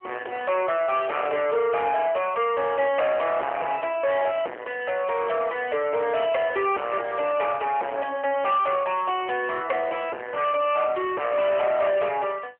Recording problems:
phone line; 320 Hz to 3.1 kHz, AMR-NB
distorted audio; soft clipping, signal-to-distortion ratio 7 dB

